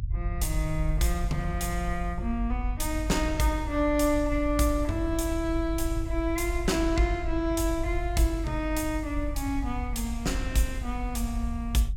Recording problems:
low-frequency rumble; below 62 Hz, strongest tone 48 Hz, SNR 5 dB

